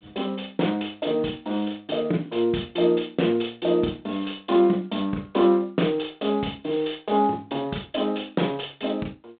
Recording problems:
phone line; 170 Hz to 3.8 kHz, G.726

